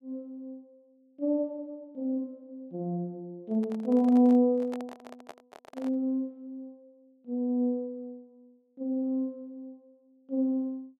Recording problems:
microphone handling noise; from 3.5 to 6 s; peak -10 dB vs average level

